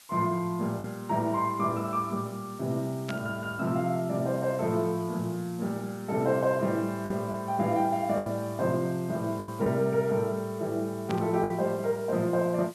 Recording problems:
background hiss; slope +2 dB per octave, SNR 22 dB
lost packets; 3% of the sound replaced, filled with the last packet
static burst; at 3 s and at 11 s; peak -5 dB vs average level

